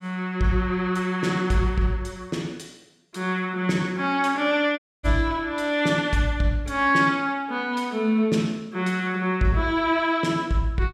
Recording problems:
dropout; at 5 s

